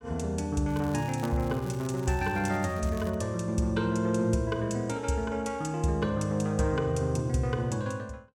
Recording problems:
crackling; from 0.5 to 3 s; loose cable, SNR 21 dB

